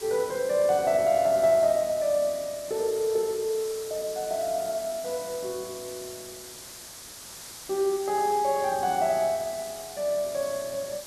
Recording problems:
background hiss; SNR 14 dB

